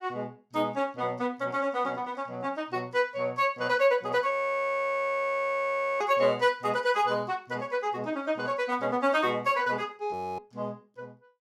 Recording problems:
frozen audio; at 4.5 s for 1.5 s and at 10 s

